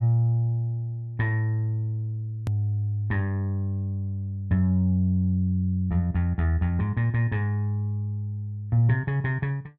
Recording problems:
hard cut with a click; at 2.5 s

